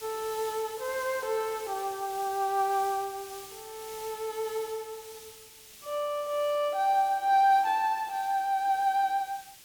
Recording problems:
background hiss; SNR 17 dB

